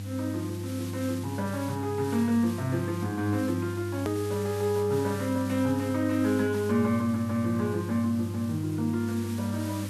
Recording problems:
electrical hum; 50 Hz, harmonics up to 500 Hz, SNR 7 dB
background hiss; slope +2 dB per octave, SNR 17 dB
hard cut with a click; at 4 s

